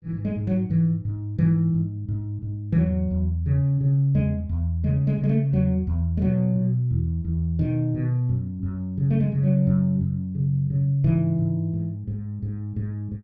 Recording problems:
none

